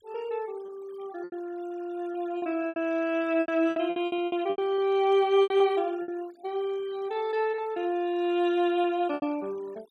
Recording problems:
noise reduction artefacts; signal-to-artefact ratio 25 dB
lost packets; 10% of the sound replaced, filled with repeated pitch periods

